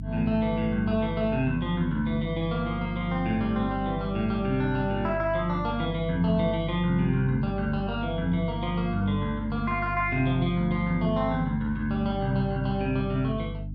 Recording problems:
electrical hum; 50 Hz, harmonics up to 300 Hz, SNR 8 dB

